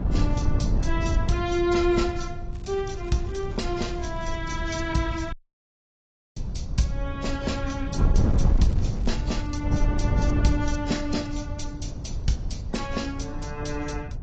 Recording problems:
codec artefacts; AAC, log-spectral distance 3 dB, nothing above 7.3 kHz
low-frequency rumble; below 92 Hz, SNR 9 dB
wind noise; below 120 Hz, SNR 0 dB
crackling; from 2.5 to 5.5 s and from 8 to 9.5 s; loose cable, SNR 24 dB
dropout; at 5.5 s for 1 s

